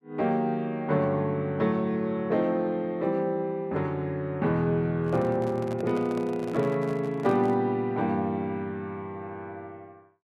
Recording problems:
microphone handling noise; from 5 to 7.5 s; peak -9 dB vs average level

